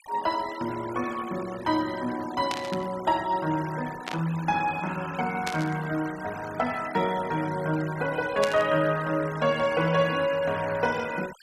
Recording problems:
noise reduction artefacts; signal-to-artefact ratio 15 dB
static burst; 4 times, first at 2.5 s; peak 0 dB vs average level

